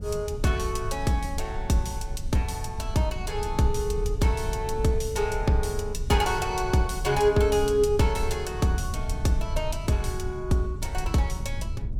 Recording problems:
low-frequency rumble; below 82 Hz, SNR 7 dB

